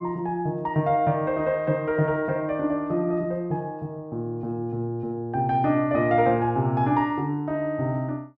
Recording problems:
none

